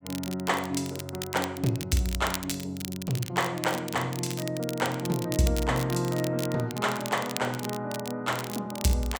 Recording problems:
crackle; vinyl, SNR 9 dB

